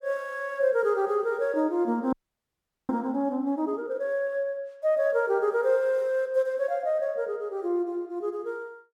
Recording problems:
frozen audio; at 2 s for 1 s

